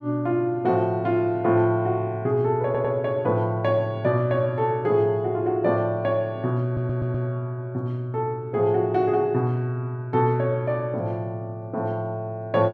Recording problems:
audio stuttering; at 2.5 s and at 6.5 s

